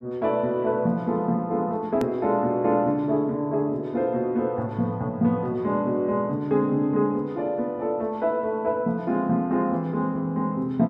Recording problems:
edit click; at 2 s

